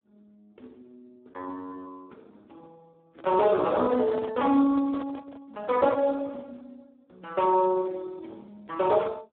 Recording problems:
phone line; 220 Hz to 3.9 kHz, Speex
microphone handling noise; from 3 to 6 s; peak -8 dB vs average level

